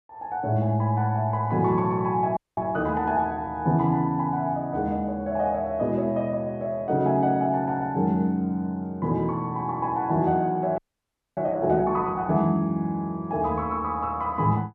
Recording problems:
audio freezing; at 2.5 s and at 11 s for 0.5 s

